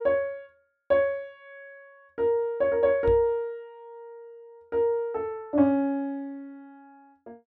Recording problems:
microphone thump; at 3 s; peak -4 dB vs average level

